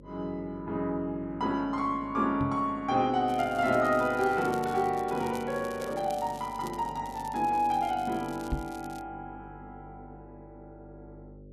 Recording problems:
hum; 50 Hz, harmonics up to 600 Hz, SNR 21 dB
knock on the microphone; at 2.5 s and at 8.5 s; peak +1 dB vs average level
crackle; from 3.5 to 9 s; loose cable, SNR 21 dB

